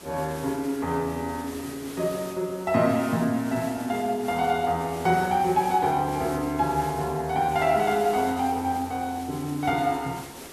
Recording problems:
background hiss; slope -4 dB per octave, SNR 16 dB

